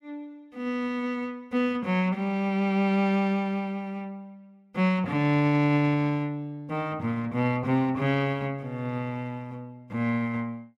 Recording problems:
none

